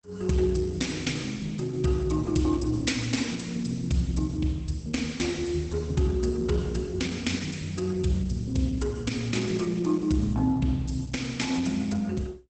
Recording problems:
codec artefacts; Opus, log-spectral distance 5 dB, nothing above 8.2 kHz

